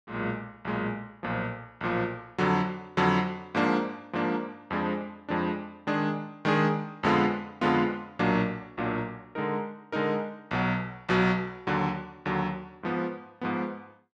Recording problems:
none

